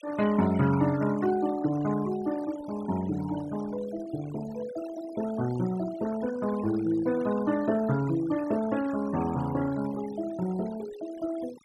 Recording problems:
denoising artefacts; signal-to-artefact ratio 16 dB

